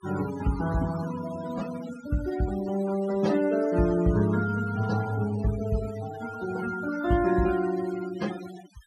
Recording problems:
noise reduction artefacts; signal-to-artefact ratio 14 dB

